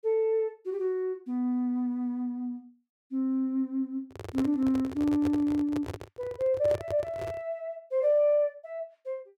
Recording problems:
handling noise; from 4 to 7.5 s; peak -2 dB vs average level

